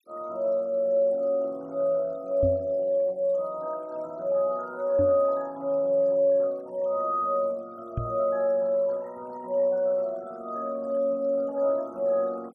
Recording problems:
denoising artefacts; signal-to-artefact ratio 27 dB
microphone thump; at 2.5 s, at 5 s and at 8 s; peak 0 dB vs average level

